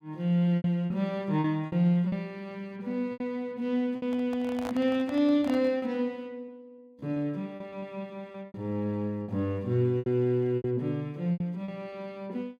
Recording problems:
packet loss; 9% of the sound replaced, filled with repeated pitch periods
microphone handling noise; from 4 to 6 s; peak -5 dB vs average level

